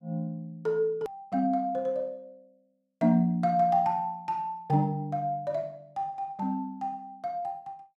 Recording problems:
click at an edit; at 1 s

